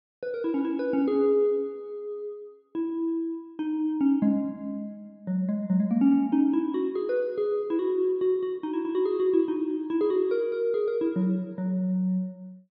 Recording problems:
none

